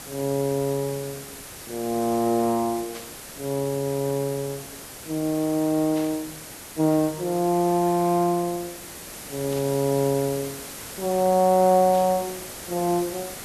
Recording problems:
background hiss; slope -2 dB per octave, SNR 13 dB
burst of static; 4 times, first at 3 s; peak -12 dB vs average level

